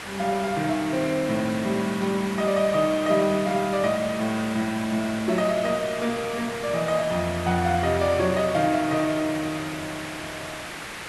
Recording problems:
hiss; SNR 10 dB

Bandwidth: 12 kHz